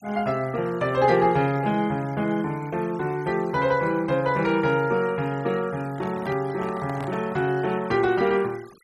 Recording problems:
denoising artefacts; signal-to-artefact ratio 23 dB
handling noise; from 6 to 7.5 s; peak -9 dB vs average level

